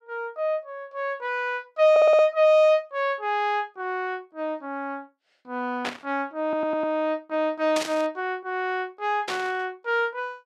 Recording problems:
stutter; at 2 s and at 6.5 s
static burst; at 6 s, at 8 s and at 9.5 s; peak -1 dB vs average level

